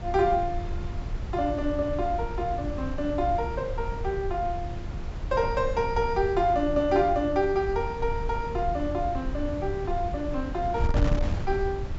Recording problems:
treble missing; nothing above 8 kHz
wind on the microphone; below 100 Hz, SNR 6 dB

